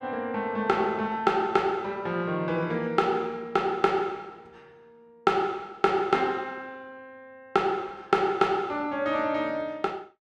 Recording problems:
none

